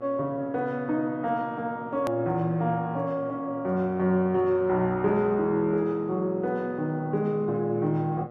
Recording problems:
hum; 60 Hz, harmonics up to 1.9 kHz, SNR 18 dB
click at an edit; at 2 s

